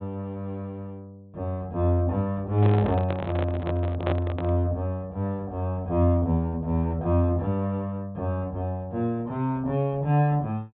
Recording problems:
treble missing; nothing above 4 kHz
microphone handling noise; from 2.5 to 4.5 s; peak +1 dB vs average level

